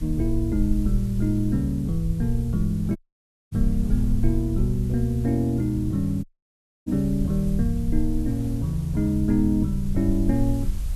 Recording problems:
background hiss; slope -2 dB per octave, SNR 25 dB
low-frequency rumble; below 54 Hz, SNR 7 dB
wind noise; below 240 Hz, SNR 21 dB
dropout; at 3 s for 0.5 s and at 6 s for 0.5 s

